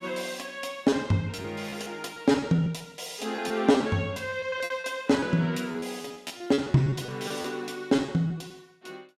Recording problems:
packet loss; 11% of the sound replaced, filled with repeated pitch periods

